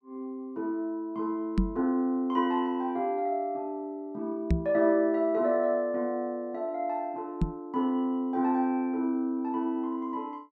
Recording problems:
microphone thump; at 1.5 s, at 4.5 s and at 7.5 s; peak +7 dB vs average level

